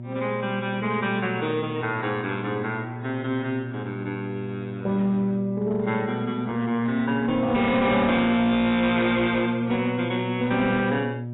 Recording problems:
codec artefacts; AAC, log-spectral distance 3 dB, nothing above 3.8 kHz
distortion; hard clipping, signal-to-distortion ratio 11 dB
hum; 60 Hz, harmonics up to 600 Hz, SNR 10 dB

